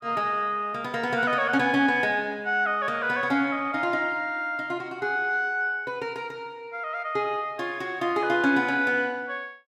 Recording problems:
none

